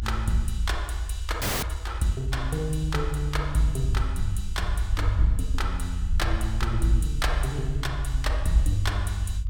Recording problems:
rumble; below 62 Hz, SNR 1 dB
frozen audio; at 1.5 s

